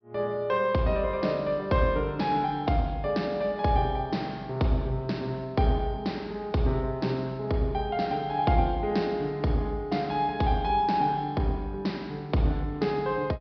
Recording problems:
treble cut off; nothing above 5.5 kHz

